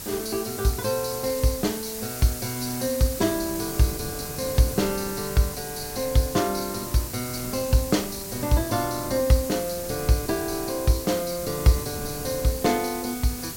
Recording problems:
background hiss; slope +1 dB per octave, SNR 8 dB
wind noise; below 350 Hz, SNR 16 dB

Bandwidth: 16.5 kHz